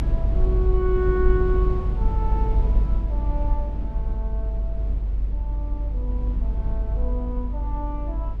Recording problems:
low-frequency rumble; below 52 Hz, strongest tone 48 Hz, SNR -6 dB

